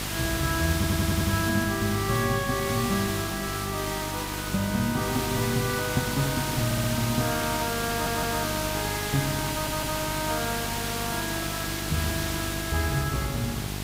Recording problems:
hum; 50 Hz, harmonics up to 1.1 kHz, SNR 8 dB
hiss; slope 0 dB per octave, SNR 2 dB
audio stuttering; 4 times, first at 1 s

